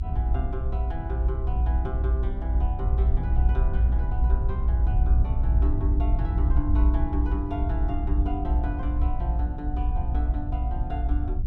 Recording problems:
low-frequency rumble; below 62 Hz, strongest tone 58 Hz, SNR -10 dB

